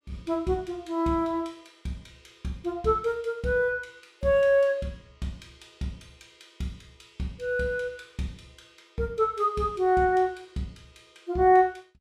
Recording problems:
none

